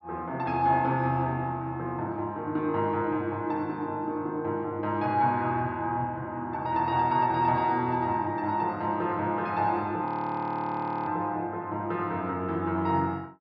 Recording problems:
treble cut off; nothing above 5.5 kHz
audio freezing; at 10 s for 1 s

